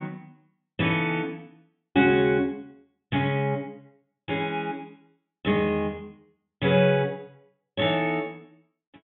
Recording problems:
treble missing; nothing above 3.6 kHz

